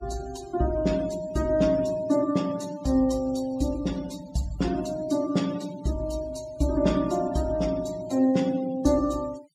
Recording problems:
noise reduction artefacts; signal-to-artefact ratio 19 dB

